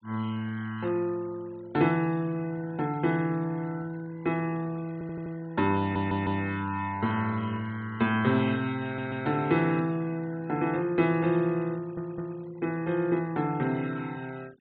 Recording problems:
treble missing; nothing above 4.3 kHz
denoising artefacts; signal-to-artefact ratio 23 dB
audio stuttering; 4 times, first at 5 s

